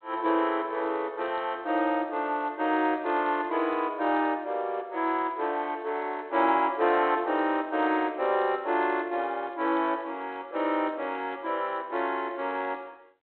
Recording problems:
phone line; 280 Hz to 3.3 kHz, G.726

